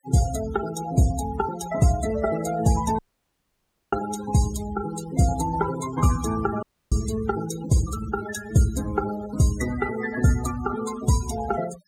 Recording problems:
denoising artefacts; signal-to-artefact ratio 12 dB
audio cutting out; at 3 s for 1 s and at 6.5 s

